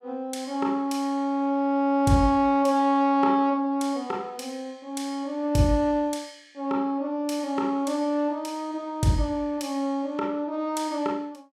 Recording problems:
none

